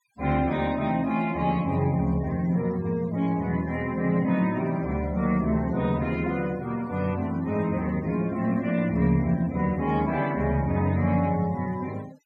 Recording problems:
denoising artefacts; signal-to-artefact ratio 22 dB

